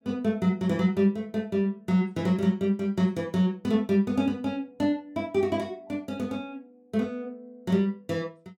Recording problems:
none

